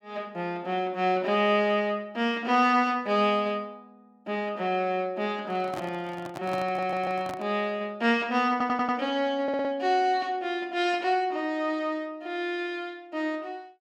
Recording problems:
handling noise; from 5.5 to 7.5 s; peak -6 dB vs average level
stutter; at 6.5 s, at 8.5 s and at 9.5 s

